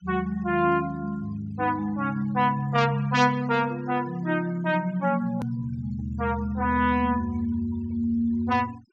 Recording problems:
low-pass filter; nothing above 8 kHz
noise reduction artefacts; signal-to-artefact ratio 24 dB
hard cut with a click; at 5.5 s

